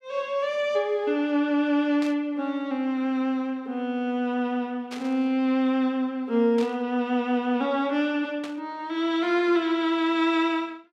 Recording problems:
burst of static; 4 times, first at 2 s; peak -9 dB vs average level

